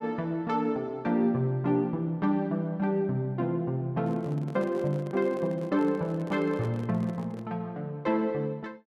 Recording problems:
handling noise; from 4 to 7.5 s; peak -7 dB vs average level

